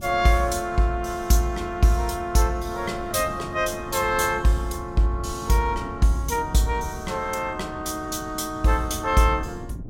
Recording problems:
wind on the microphone; below 200 Hz, SNR 15 dB

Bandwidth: 16.5 kHz